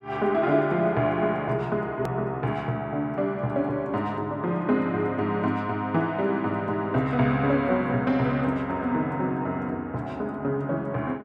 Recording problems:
edit click; at 2 s

